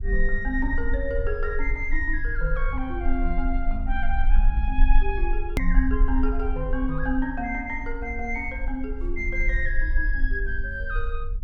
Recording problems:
low-frequency rumble; below 42 Hz, strongest tone 18 Hz, SNR -1 dB
hard cut with a click; at 5.5 s

